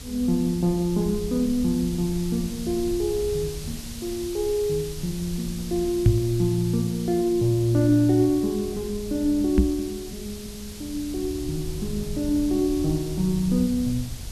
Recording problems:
hiss; SNR 15 dB
low-frequency rumble; below 100 Hz, SNR 14 dB
knock on the microphone; at 6 s and at 9.5 s; peak +8 dB vs average level

